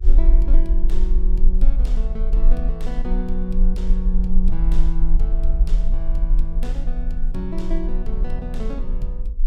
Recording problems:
hum; 50 Hz, harmonics up to 450 Hz, SNR 28 dB
rumble; below 36 Hz, strongest tone 24 Hz, SNR -8 dB

